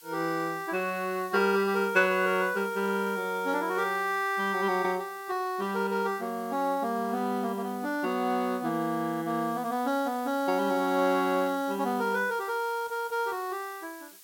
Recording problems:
hiss; slope +3 dB per octave, SNR 21 dB

